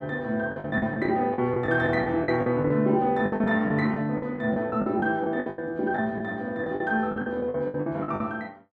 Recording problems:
packet loss; 15% of the sound replaced, filled with the last packet

